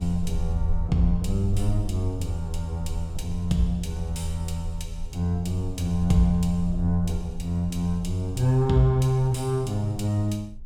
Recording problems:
rumble; below 52 Hz, strongest tone 18 Hz, SNR 11 dB

